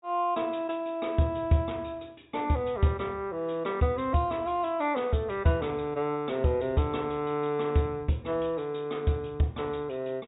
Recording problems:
low-pass filter; nothing above 4 kHz

